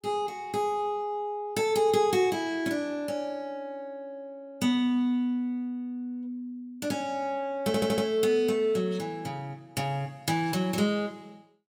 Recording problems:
audio stuttering; at 7.5 s

